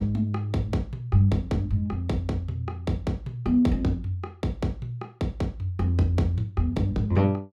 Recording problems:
none

